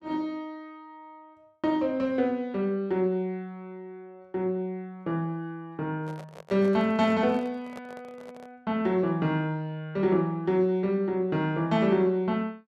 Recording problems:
microphone handling noise; from 6 to 8.5 s; peak -12 dB vs average level

